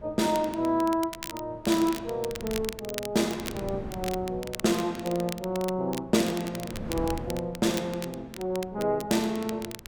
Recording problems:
wind on the microphone; below 320 Hz, SNR 16 dB
crackle; vinyl, SNR 12 dB

